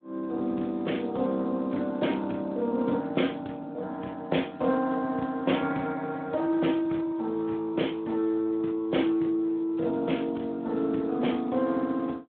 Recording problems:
telephone audio; 220 Hz to 3.5 kHz, Speex

